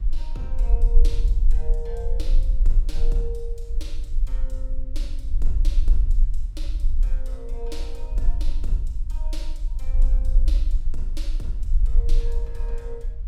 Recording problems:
low-frequency rumble; below 40 Hz, strongest tone 20 Hz, SNR -14 dB
wind on the microphone; below 110 Hz, SNR 18 dB

